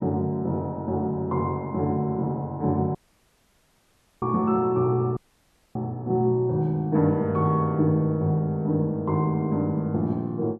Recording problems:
audio cutting out; at 3 s for 1.5 s and at 5 s for 0.5 s

